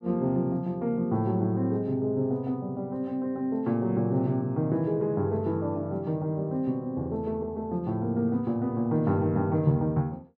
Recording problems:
none

